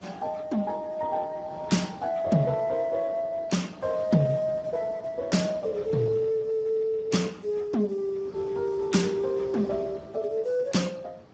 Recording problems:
codec artefacts; Speex, log-spectral distance 3 dB, nothing above 7.6 kHz
wind on the microphone; below 700 Hz, SNR 20 dB

